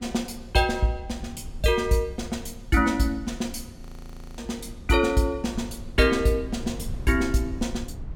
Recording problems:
low-frequency rumble; below 110 Hz, SNR 15 dB
frozen audio; at 4 s for 0.5 s

